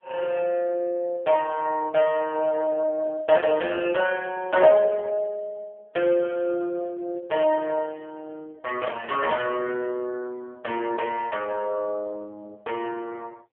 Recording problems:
telephone audio; 300 Hz to 3.1 kHz, AMR-NB

